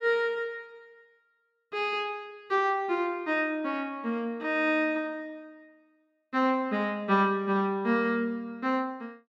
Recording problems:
none

